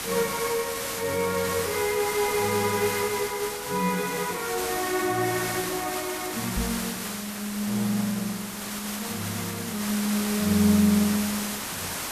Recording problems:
hiss; slope -1 dB per octave, SNR 4 dB
microphone thump; at 6.5 s; peak -1 dB vs average level

